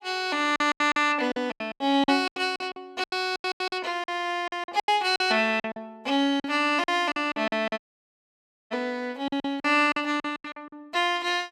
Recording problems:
lost packets; 17% of the sound replaced, filled with silence
audio cutting out; at 8 s for 1 s

